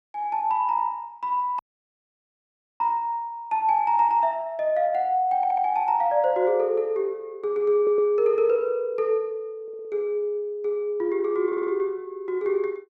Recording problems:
audio cutting out; at 1.5 s for 1 s
audio stuttering; 4 times, first at 5.5 s

